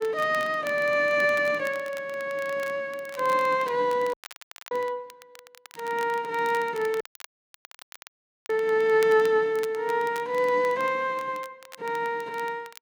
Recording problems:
crackling; vinyl, SNR 21 dB
dropout; at 4 s for 0.5 s and at 7 s for 1.5 s

